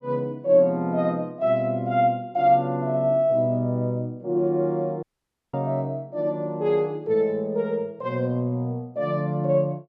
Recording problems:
dropout; at 5 s for 0.5 s

